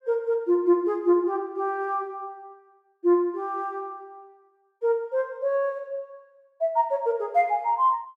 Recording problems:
none

